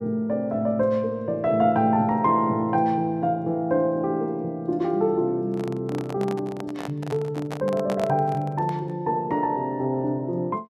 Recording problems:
handling noise; from 5.5 to 9 s; peak -4 dB vs average level

